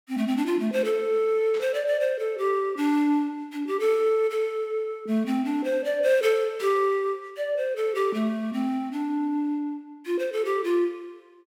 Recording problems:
static burst; at 1.5 s and at 6.5 s; peak -13 dB vs average level

